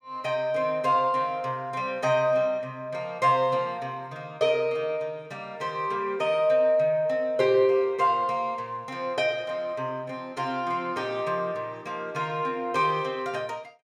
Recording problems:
none

